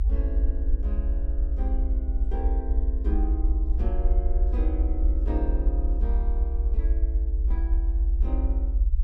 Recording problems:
rumble; below 60 Hz, strongest tone 44 Hz, SNR -12 dB

